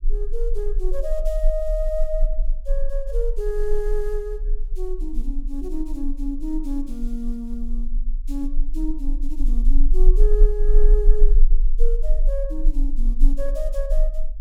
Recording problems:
low-frequency rumble; below 32 Hz, strongest tone 20 Hz, SNR -5 dB

